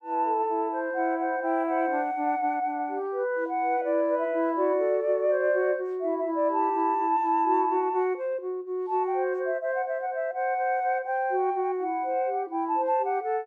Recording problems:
none

